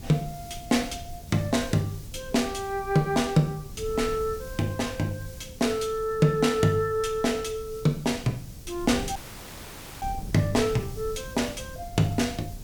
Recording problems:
hiss; SNR 21 dB
wind on the microphone; below 140 Hz, SNR 16 dB
audio cutting out; at 9 s for 1 s

